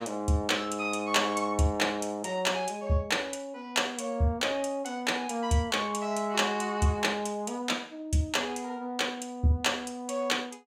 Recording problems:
none

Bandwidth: 16 kHz